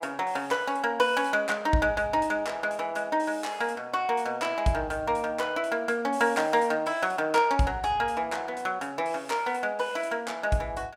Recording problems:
none

